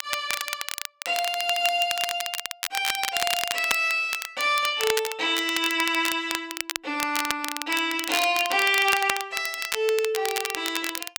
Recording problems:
crackle; vinyl, SNR 6 dB

